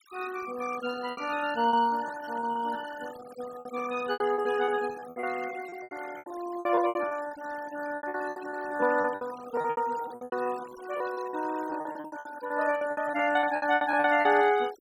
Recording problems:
noise reduction artefacts; signal-to-artefact ratio 16 dB
lost packets; 18% of the sound replaced, filled with repeated pitch periods

